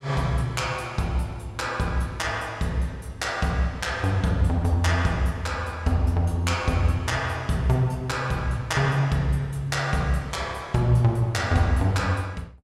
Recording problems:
none

